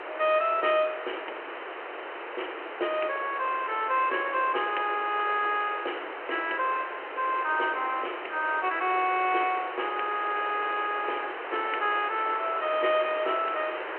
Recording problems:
telephone audio; 300 Hz to 3.2 kHz, G.726
hiss; SNR 8 dB

